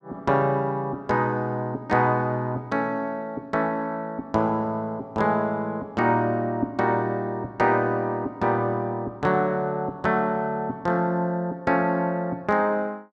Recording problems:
none

